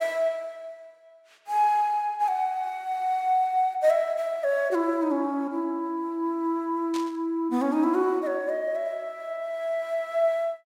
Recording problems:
burst of static; at 7 s; peak -8 dB vs average level

